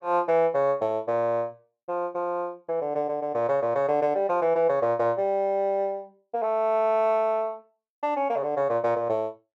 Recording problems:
none

